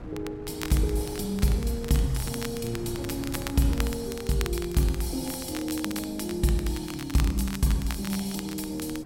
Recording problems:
hum; 50 Hz, harmonics up to 600 Hz, SNR 30 dB
wind on the microphone; below 270 Hz, SNR 14 dB
crackling; vinyl, SNR 12 dB

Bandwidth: 16.5 kHz